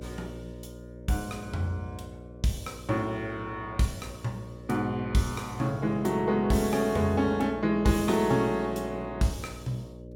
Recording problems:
electrical hum; 60 Hz, harmonics up to 600 Hz, SNR 15 dB

